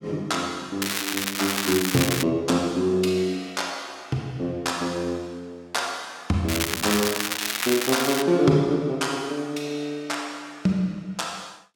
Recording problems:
crackle; from 1 to 2 s and from 6.5 to 8 s; loose cable, SNR 1 dB

